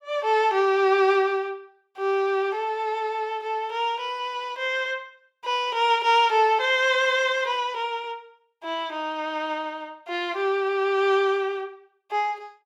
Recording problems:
none

